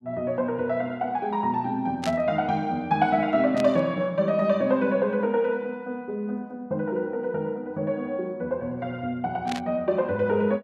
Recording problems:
burst of static; at 2 s, at 3.5 s and at 9.5 s; peak -4 dB vs average level

